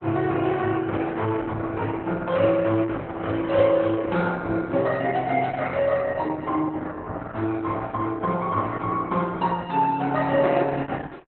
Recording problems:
codec artefacts; Opus, log-spectral distance 3 dB, nothing above 3.9 kHz

